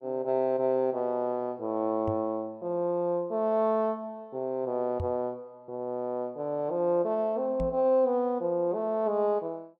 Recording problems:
microphone bump; at 2 s, at 5 s and at 7.5 s; peak -2 dB vs average level

